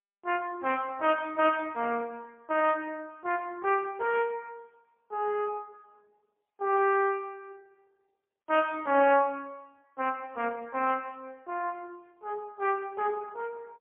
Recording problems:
telephone audio; 260 Hz to 3.3 kHz, AMR-NB, then MP3

